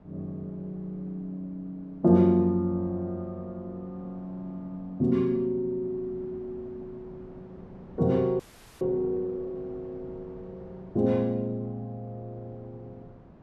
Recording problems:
wind on the microphone; below 420 Hz, SNR 21 dB
frozen audio; at 8.5 s

